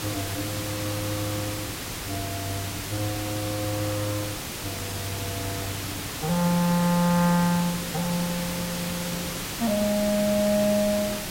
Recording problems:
hiss; slope -2 dB per octave, SNR 4 dB

